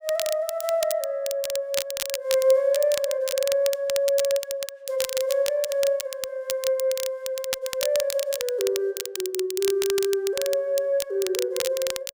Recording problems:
crackle; vinyl, SNR 7 dB

